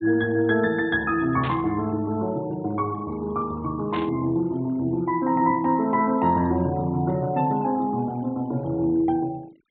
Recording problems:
treble cut off; nothing above 4 kHz
denoising artefacts; signal-to-artefact ratio 26 dB
static burst; at 1.5 s and at 4 s; peak -7 dB vs average level

